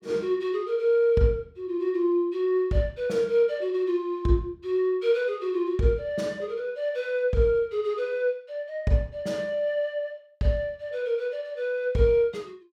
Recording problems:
none

